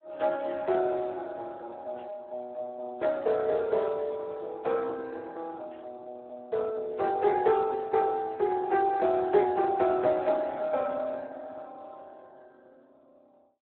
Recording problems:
phone line; 300 Hz to 2.1 kHz, Speex

